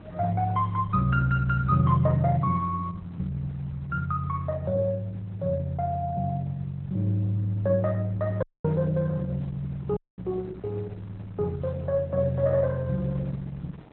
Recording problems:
lossy codec; Opus, log-spectral distance 2 dB
wind noise; below 420 Hz, SNR 22 dB
audio cutting out; at 8.5 s and at 10 s

